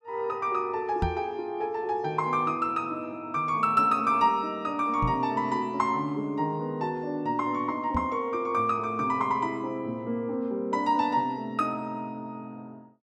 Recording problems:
microphone bump; at 1 s, at 5 s and at 8 s; peak +2 dB vs average level

